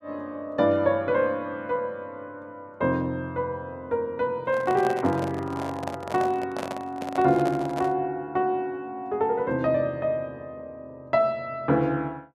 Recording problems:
handling noise; from 4.5 to 8 s; peak -2 dB vs average level

